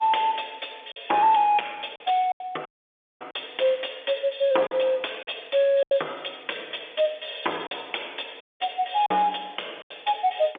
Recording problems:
telephone audio; 320 Hz to 3.5 kHz, G.711
distorted audio; soft clipping, signal-to-distortion ratio 11 dB
lost packets; 5% of the sound replaced, filled with silence
audio cutting out; at 2.5 s for 0.5 s and at 8.5 s

